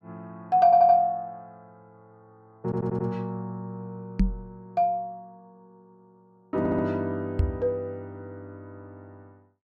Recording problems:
stutter; at 0.5 s, at 2.5 s and at 6.5 s
microphone bump; at 4 s and at 7.5 s; peak +5 dB vs average level

